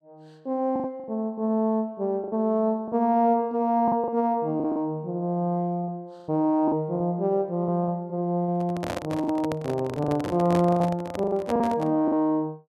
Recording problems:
packet loss; 10% of the sound replaced, filled with the last packet
microphone handling noise; from 8.5 to 12 s; peak -2 dB vs average level

